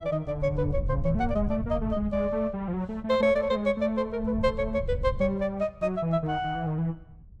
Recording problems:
wind on the microphone; below 100 Hz, SNR 9 dB

